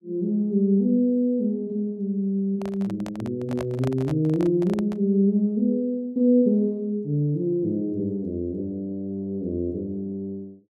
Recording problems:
handling noise; from 2.5 to 5 s; peak -6 dB vs average level

